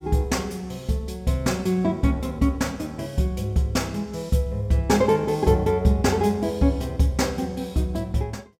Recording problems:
none

